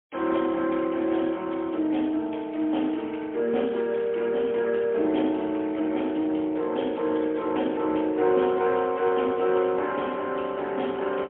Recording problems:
phone line; 240 Hz to 3.3 kHz, AMR-NB, then MP3

